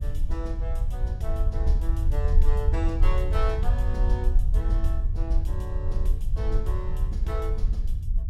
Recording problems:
rumble; below 62 Hz, SNR -9 dB

